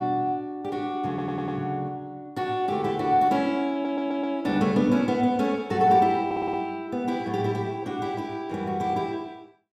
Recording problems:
stutter; at 1 s, at 3.5 s and at 6.5 s

